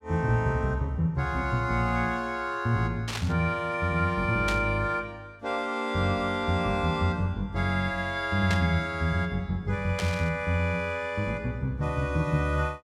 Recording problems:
burst of static; 4 times, first at 3 s; peak -1 dB vs average level

